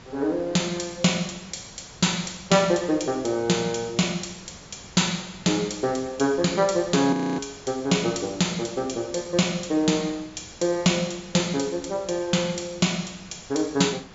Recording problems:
low-pass filter; nothing above 7.5 kHz
background hiss; slope -4 dB per octave, SNR 21 dB
audio freezing; at 7 s

